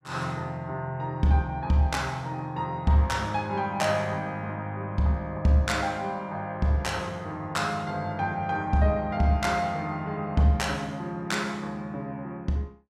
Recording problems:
none

